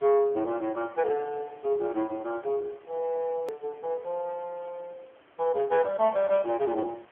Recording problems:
telephone audio; 240 Hz to 3.3 kHz, AMR-NB
hiss; SNR 27 dB
hard cut with a click; at 3.5 s

